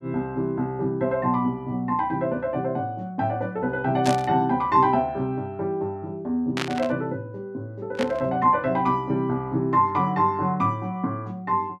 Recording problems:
static burst; at 4 s, at 6.5 s and at 8 s; peak +1 dB vs average level

